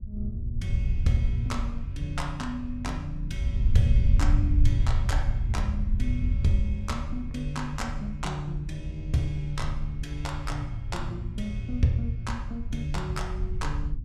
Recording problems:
wind on the microphone; below 82 Hz, SNR -2 dB

